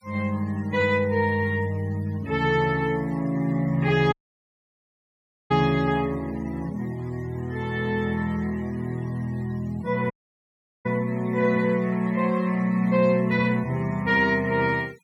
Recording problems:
denoising artefacts; signal-to-artefact ratio 24 dB
dropout; at 4 s for 1.5 s and at 10 s for 1 s

